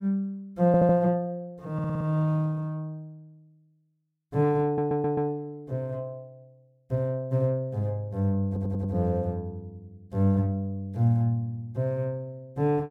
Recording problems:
audio stuttering; 4 times, first at 0.5 s

